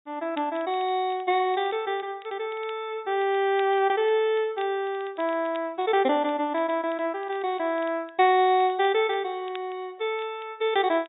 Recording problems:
treble missing; nothing above 4 kHz
crackle; vinyl, SNR 26 dB

